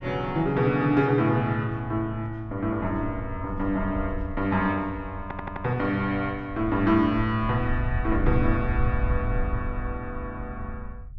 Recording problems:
rumble; below 78 Hz, SNR 8 dB
audio stuttering; at 5 s

